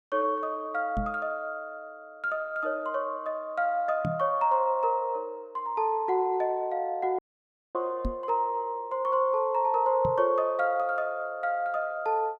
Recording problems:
microphone thump; 4 times, first at 1 s; peak 0 dB vs average level
audio cutting out; at 7 s for 0.5 s

